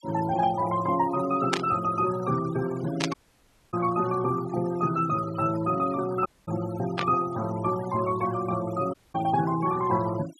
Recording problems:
denoising artefacts; signal-to-artefact ratio 14 dB
burst of static; at 1.5 s, at 3 s and at 7 s; peak +4 dB vs average level
dropout; at 3 s for 0.5 s, at 6.5 s and at 9 s

